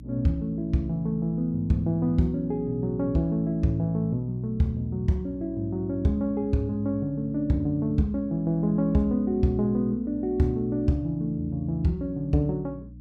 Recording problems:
hum; 60 Hz, harmonics up to 300 Hz, SNR 18 dB

